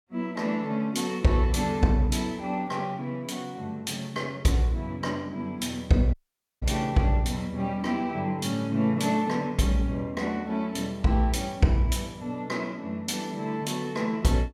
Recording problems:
audio cutting out; at 6 s

